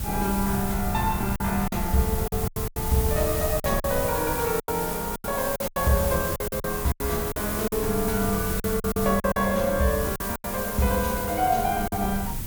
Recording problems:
hiss; slope 0 dB per octave, SNR 5 dB
wind on the microphone; below 130 Hz, SNR 9 dB
lost packets; 10% of the sound replaced, filled with silence
crackle; at 8.5 s; loose cable, SNR 27 dB

